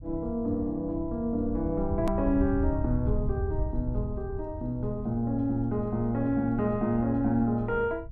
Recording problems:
low-frequency rumble; below 90 Hz, SNR 8 dB
click at an edit; at 2 s

